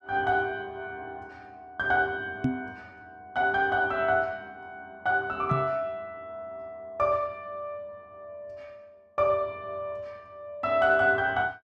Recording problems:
knock on the microphone; at 2.5 s and at 5.5 s; peak +5 dB vs average level

